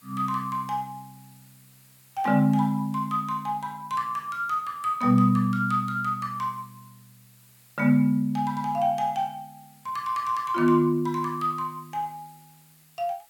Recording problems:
background hiss; slope 0 dB per octave, SNR 29 dB

